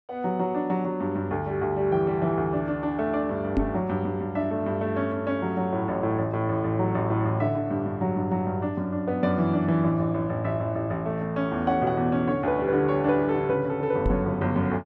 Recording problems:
microphone thump; at 3.5 s and at 14 s; peak +5 dB vs average level

